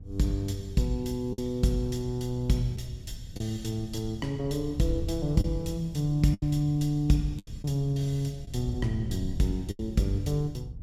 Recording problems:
wind noise; below 110 Hz, SNR 12 dB
lost packets; 4% of the sound replaced, filled with the last packet

